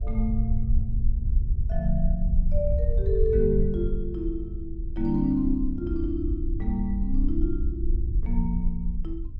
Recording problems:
low-frequency rumble; below 60 Hz, SNR 0 dB

